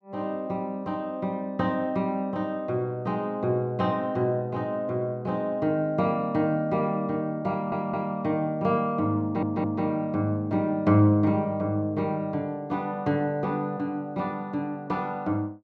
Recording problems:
audio stuttering; at 7.5 s and at 9 s

